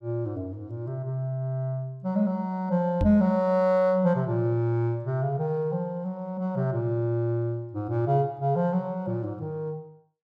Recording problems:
knock on the microphone; at 3 s; peak +3 dB vs average level

